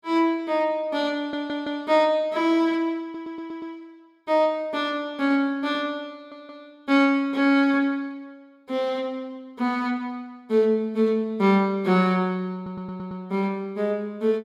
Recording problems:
stutter; 4 times, first at 1 s

